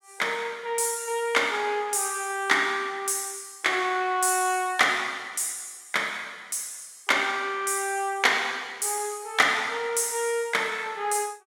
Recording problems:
none

